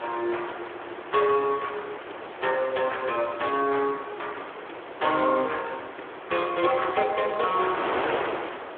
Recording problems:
telephone audio; 300 Hz to 3.5 kHz, Speex
wind noise; below 1.6 kHz, SNR 9 dB

